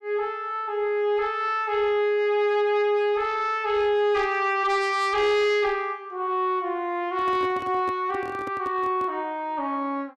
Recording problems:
distortion; soft clipping, signal-to-distortion ratio 12 dB
microphone handling noise; from 7 to 9 s; peak -8 dB vs average level

